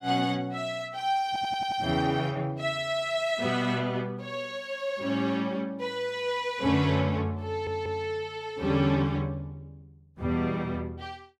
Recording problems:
audio stuttering; at 1.5 s and at 7.5 s

